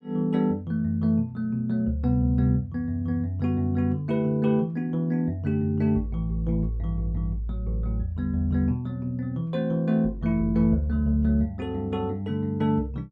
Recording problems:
none

